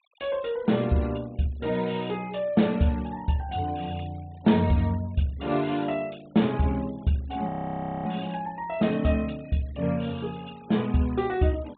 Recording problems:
treble cut off; nothing above 4 kHz
noise reduction artefacts; signal-to-artefact ratio 25 dB
audio freezing; at 7.5 s for 0.5 s

